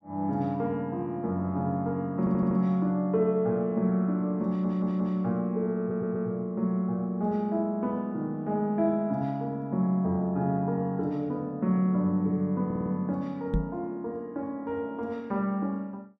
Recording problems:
audio stuttering; 4 times, first at 2 s
microphone thump; at 14 s; peak +5 dB vs average level

